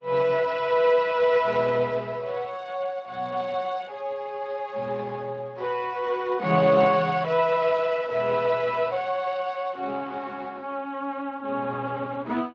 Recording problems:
lossy codec; Opus, then Speex, log-spectral distance 3 dB

